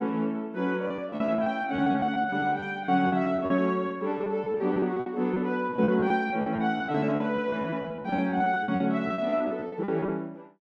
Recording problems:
packet loss; 17% of the sound replaced, filled with repeated pitch periods

